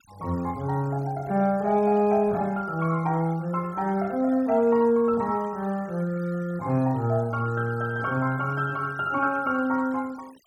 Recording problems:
noise reduction artefacts; signal-to-artefact ratio 27 dB

